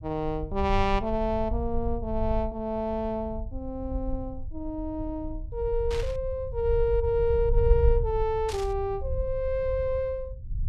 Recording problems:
rumble; below 66 Hz, SNR 5 dB
static burst; at 6 s and at 8.5 s; peak -6 dB vs average level

